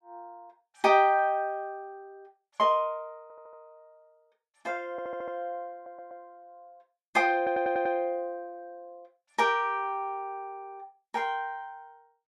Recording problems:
stutter; 4 times, first at 3 s

